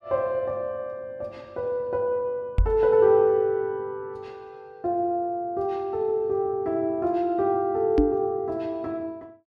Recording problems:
microphone thump; at 2.5 s and at 8 s; peak +7 dB vs average level

